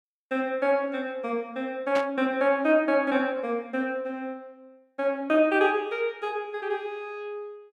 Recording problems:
static burst; at 2 s; peak -4 dB vs average level

